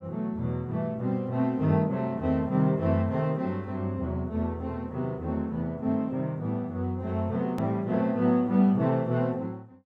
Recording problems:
hard cut with a click; at 7.5 s

